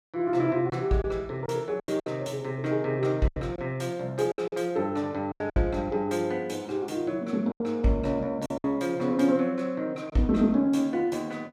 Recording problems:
lost packets; 7% of the sound replaced, filled with silence

